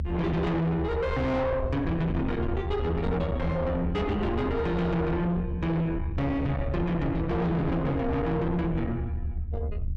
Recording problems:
distorted audio; soft clipping, signal-to-distortion ratio 7 dB
low-frequency rumble; below 180 Hz, SNR 5 dB

